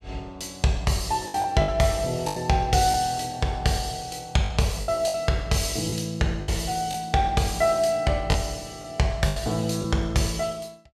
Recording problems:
lost packets; 6% of the sound replaced, filled with the last packet

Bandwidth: 14.5 kHz